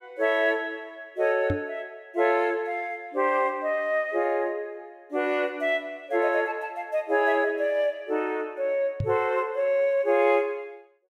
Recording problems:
microphone thump; at 1.5 s and at 9 s; peak +1 dB vs average level

